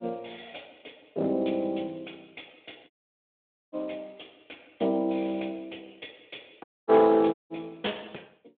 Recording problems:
phone line; 280 Hz to 3.5 kHz, Speex
distortion; hard clipping, signal-to-distortion ratio 12 dB
dropout; at 3 s for 1 s, at 6.5 s and at 7.5 s

